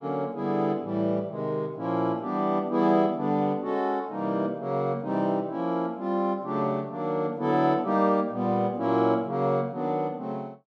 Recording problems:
none

